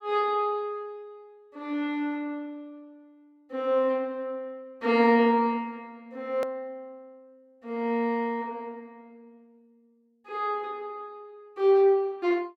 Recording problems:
click at an edit; at 6.5 s

